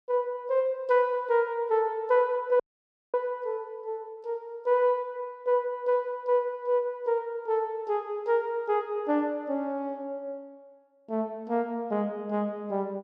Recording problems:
audio cutting out; at 2.5 s for 0.5 s

